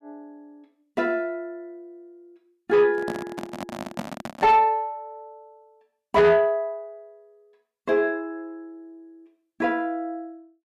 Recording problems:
distorted audio; soft clipping, signal-to-distortion ratio 11 dB
microphone handling noise; from 3 to 4.5 s; peak -3 dB vs average level

